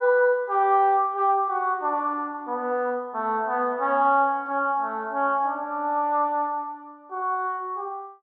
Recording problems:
none

